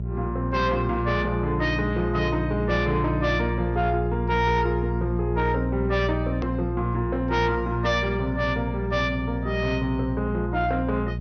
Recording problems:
low-pass filter; nothing above 6.2 kHz
distorted audio; soft clipping, signal-to-distortion ratio 10 dB
hum; 60 Hz, harmonics up to 420 Hz, SNR 3 dB
click at an edit; at 6.5 s

